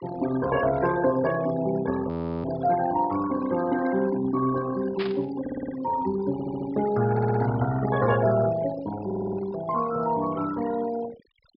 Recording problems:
treble cut off; nothing above 5.5 kHz
denoising artefacts; signal-to-artefact ratio 13 dB
frozen audio; at 2 s
static burst; at 5 s; peak -4 dB vs average level
audio stuttering; 4 times, first at 5.5 s

